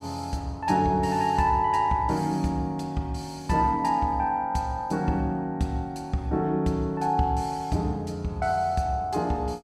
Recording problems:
none

